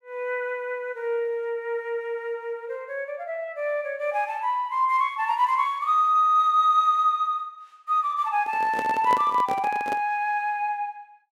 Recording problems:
microphone handling noise; from 8.5 to 10 s; peak -3 dB vs average level

